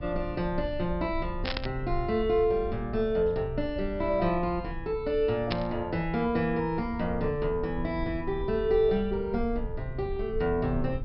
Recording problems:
treble cut off; nothing above 5.4 kHz
rumble; below 78 Hz, SNR 11 dB
burst of static; at 1.5 s and at 5.5 s; peak +1 dB vs average level

